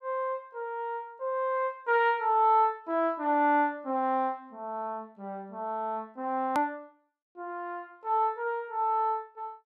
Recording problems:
hard cut with a click; at 6.5 s

